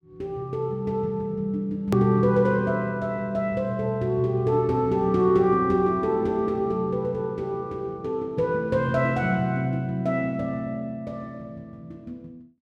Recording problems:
click at an edit; at 2 s

